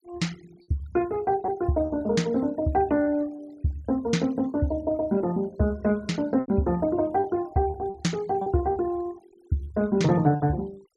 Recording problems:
denoising artefacts; signal-to-artefact ratio 26 dB
lost packets; 5% of the sound replaced, filled with repeated pitch periods

